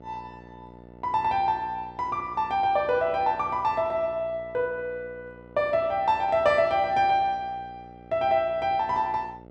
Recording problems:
electrical hum; 60 Hz, harmonics up to 1.4 kHz, SNR 22 dB

